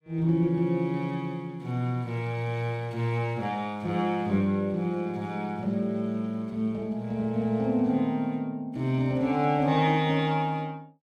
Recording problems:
none

